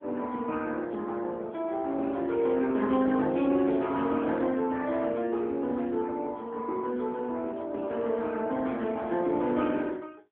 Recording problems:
telephone audio; 190 Hz to 3.8 kHz, AMR-NB

